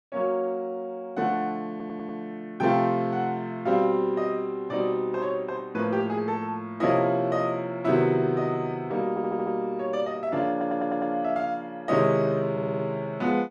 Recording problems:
stutter; 4 times, first at 1.5 s

